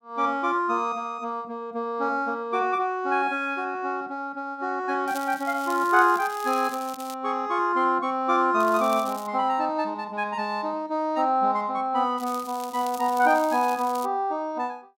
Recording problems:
crackling; from 5 to 7 s, at 8.5 s and from 12 to 14 s; loose cable, SNR 18 dB

